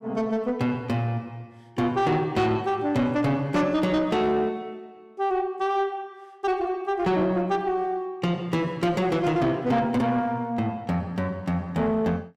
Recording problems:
distorted audio; soft clipping, signal-to-distortion ratio 11 dB

